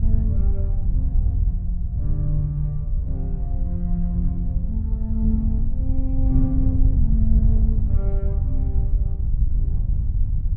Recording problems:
wind noise; below 76 Hz, SNR -7 dB

